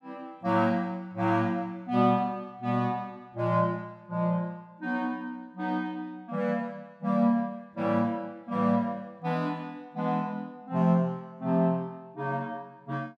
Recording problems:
none

